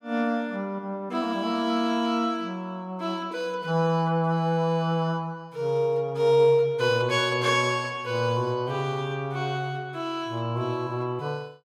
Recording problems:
none

